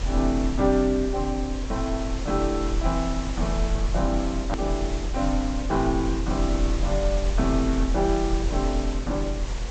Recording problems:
treble cut off; nothing above 8 kHz
mains hum; 60 Hz, harmonics up to 1.1 kHz, SNR 19 dB
background hiss; SNR 11 dB
rumble; below 46 Hz, strongest tone 44 Hz, SNR 3 dB
edit click; at 4.5 s

